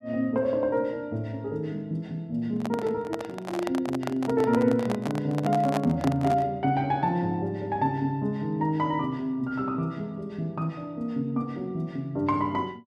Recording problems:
handling noise; from 2.5 to 6.5 s; peak +1 dB vs average level

